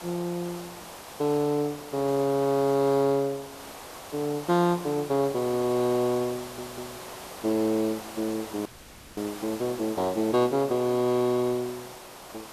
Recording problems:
background hiss; SNR 14 dB
audio stuttering; at 6.5 s
audio cutting out; at 8.5 s for 0.5 s

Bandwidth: 14 kHz